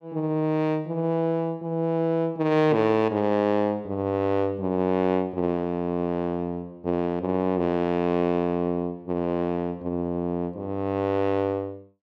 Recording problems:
none

